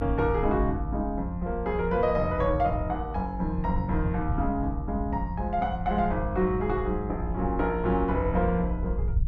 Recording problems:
low-frequency rumble; below 86 Hz, SNR 6 dB

